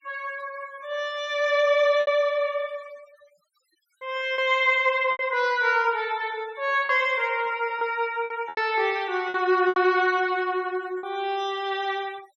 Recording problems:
noise reduction artefacts; signal-to-artefact ratio 24 dB
lost packets; 5% of the sound replaced, filled with repeated pitch periods

